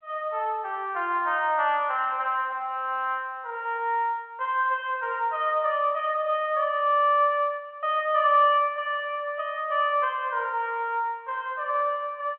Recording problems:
phone line; 300 Hz to 3.2 kHz, G.711

